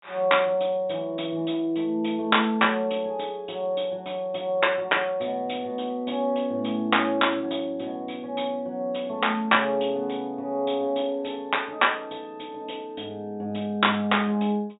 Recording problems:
treble cut off; nothing above 4 kHz

